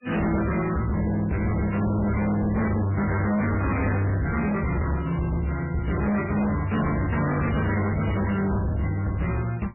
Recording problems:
lossy compression; MP3, log-spectral distance 5 dB, nothing above 2.5 kHz
distorted audio; hard clipping, uneven, signal-to-distortion ratio 6 dB

